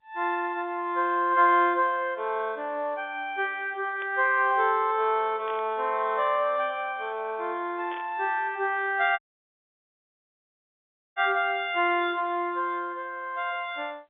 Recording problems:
telephone audio; 300 Hz to 3.6 kHz, G.711
static burst; at 4 s, at 5.5 s and at 8 s; peak -13 dB vs average level
audio cutting out; at 9 s for 2 s

